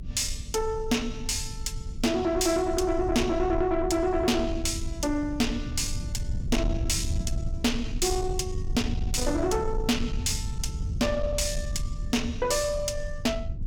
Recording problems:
distorted audio; soft clipping, signal-to-distortion ratio 8 dB
rumble; below 96 Hz, SNR 6 dB

